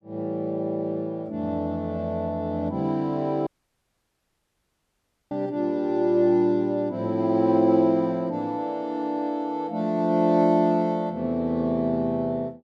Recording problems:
audio cutting out; at 3.5 s for 2 s

